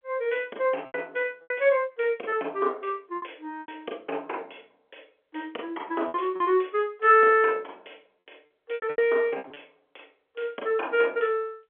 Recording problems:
telephone audio; 280 Hz to 3.4 kHz, G.711
packet loss; 7% of the sound replaced, filled with repeated pitch periods

